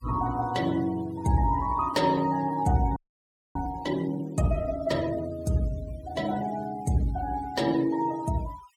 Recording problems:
denoising artefacts; signal-to-artefact ratio 19 dB
frozen audio; at 3 s for 0.5 s

